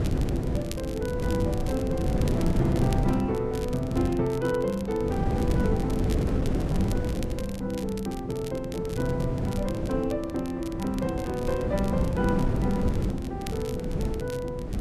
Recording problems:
wind on the microphone; below 250 Hz, SNR 0 dB
crackle; vinyl, SNR 16 dB

